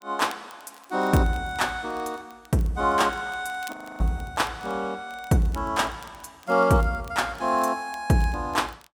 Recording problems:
crackling; vinyl, SNR 26 dB
frozen audio; at 3.5 s

